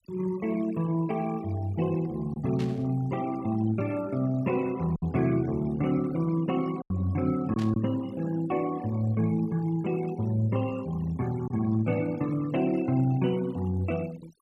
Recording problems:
denoising artefacts; signal-to-artefact ratio 20 dB
lost packets; 1.5% of the sound replaced, filled with silence
burst of static; at 2.5 s and at 7.5 s; peak -11 dB vs average level

